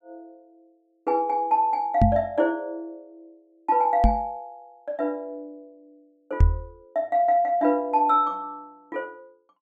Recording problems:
microphone bump; at 2 s, at 4 s and at 6.5 s; peak +9 dB vs average level

